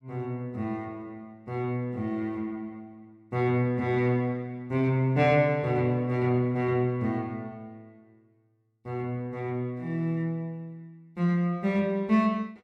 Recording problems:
none

